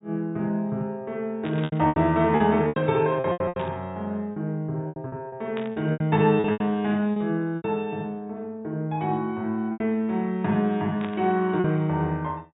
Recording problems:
treble missing; nothing above 4 kHz
packet loss; 9% of the sound replaced, filled with repeated pitch periods
burst of static; 4 times, first at 1.5 s; peak -8 dB vs average level

